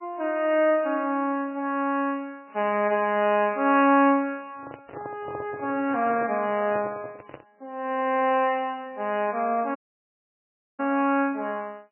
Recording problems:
codec artefacts; MP3, log-spectral distance 3 dB, nothing above 2.6 kHz
handling noise; from 4.5 to 7.5 s; peak -8 dB vs average level
audio cutting out; at 10 s for 1 s

